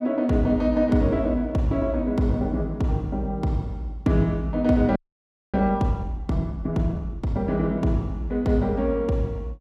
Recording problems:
frozen audio; at 5 s for 0.5 s

